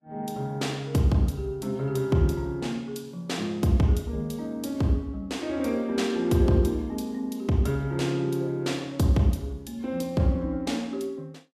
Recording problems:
lossy codec; Vorbis, log-spectral distance 2 dB, nothing above 13.1 kHz

